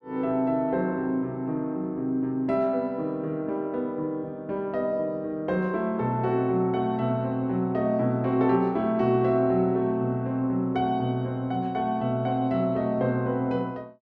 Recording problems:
none

